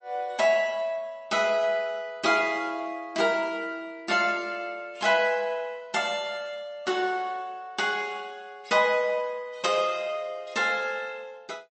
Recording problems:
codec artefacts; MP3, log-spectral distance 2 dB, nothing above 8 kHz

